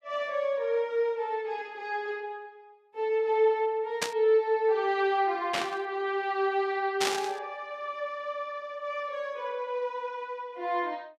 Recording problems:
static burst; at 4 s, at 5.5 s and at 7 s; peak +4 dB vs average level

